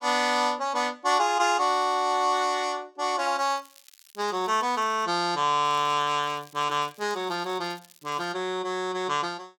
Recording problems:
crackle; from 3.5 to 5 s and from 5.5 to 8.5 s; loose cable, SNR 27 dB

